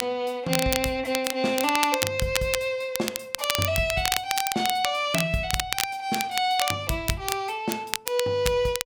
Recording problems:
crackle; vinyl, SNR 4 dB

